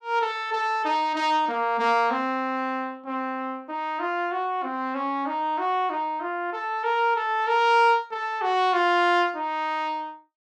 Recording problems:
none

